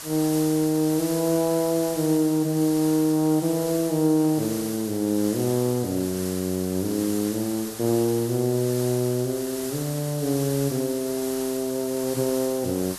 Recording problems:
background hiss; slope 0 dB per octave, SNR 10 dB

